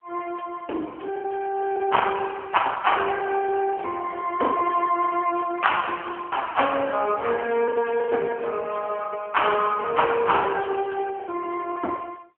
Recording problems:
phone line; 240 Hz to 3.3 kHz, AMR-NB
packet loss; 9% of the sound replaced, filled with the last packet

